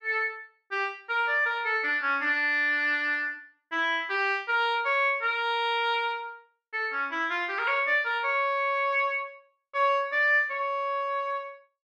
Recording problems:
none

